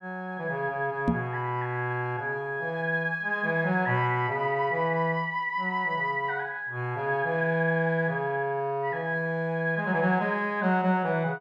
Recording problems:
microphone thump; at 1 s; peak +6 dB vs average level

